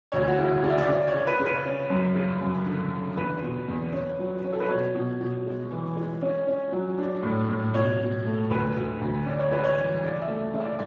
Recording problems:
lossy codec; Speex, log-spectral distance 3 dB

